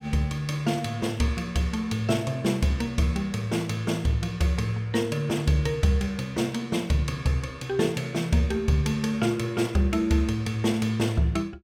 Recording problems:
none

